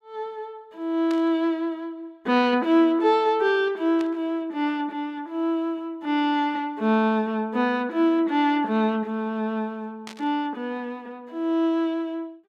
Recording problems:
static burst; at 1 s, at 4 s and at 10 s; peak -10 dB vs average level

